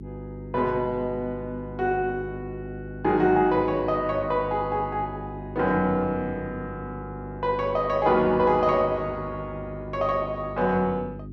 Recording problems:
hum; 50 Hz, harmonics up to 400 Hz, SNR 13 dB

